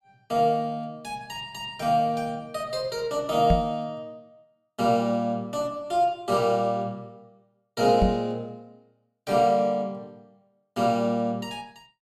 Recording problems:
microphone thump; at 3.5 s and at 8 s; peak +6 dB vs average level

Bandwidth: 15 kHz